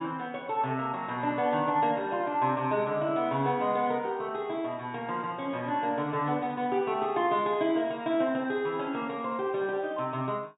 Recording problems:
treble cut off; nothing above 4 kHz

